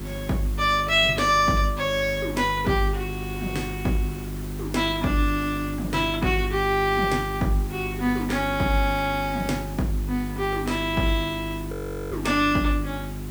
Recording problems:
mains hum; 50 Hz, harmonics up to 400 Hz, SNR 9 dB
hiss; slope -3 dB per octave, SNR 17 dB
audio freezing; at 12 s

